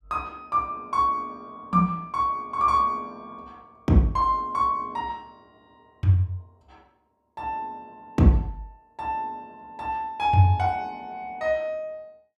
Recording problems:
none

